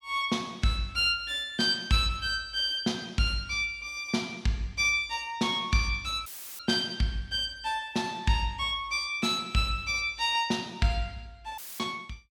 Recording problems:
audio cutting out; at 6.5 s and at 12 s; filled with static

